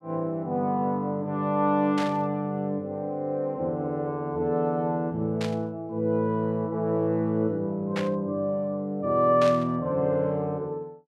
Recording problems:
static burst; 4 times, first at 2 s; peak -3 dB vs average level

